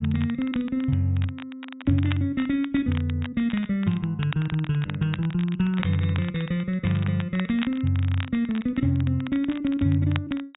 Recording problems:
treble missing; nothing above 4 kHz
crackle; vinyl, SNR 16 dB

